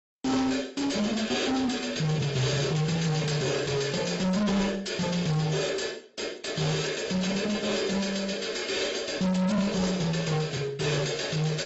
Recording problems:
lossy compression; AAC, log-spectral distance 5 dB, nothing above 7.6 kHz
distortion; soft clipping, signal-to-distortion ratio 6 dB

